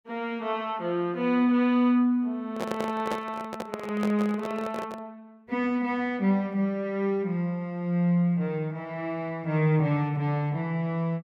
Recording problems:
handling noise; from 2.5 to 5 s; peak -1 dB vs average level

